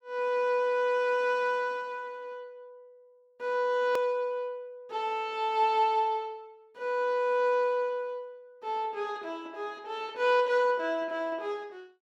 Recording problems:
hard cut with a click; at 4 s

